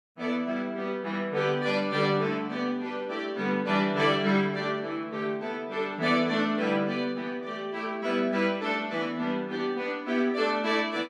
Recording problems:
none

